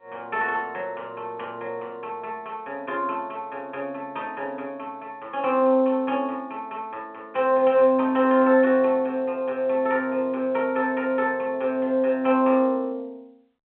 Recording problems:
phone line; 220 Hz to 3.7 kHz, G.711

